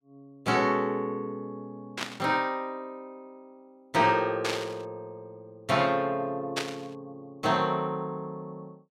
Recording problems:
static burst; at 2 s, at 4.5 s and at 6.5 s; peak +3 dB vs average level

